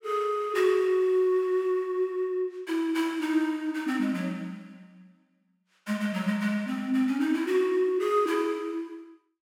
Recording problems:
none

